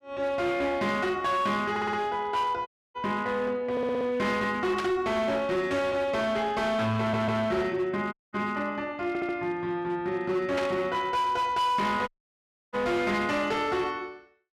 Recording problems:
distortion; hard clipping, signal-to-distortion ratio 11 dB
stutter; 4 times, first at 1.5 s
audio cutting out; at 2.5 s, at 8 s and at 12 s for 0.5 s
burst of static; at 5 s and at 11 s; peak -2 dB vs average level

